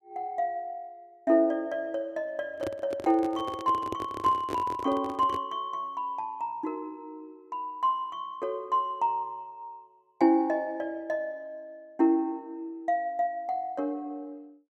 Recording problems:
handling noise; from 2.5 to 5.5 s; peak -1 dB vs average level

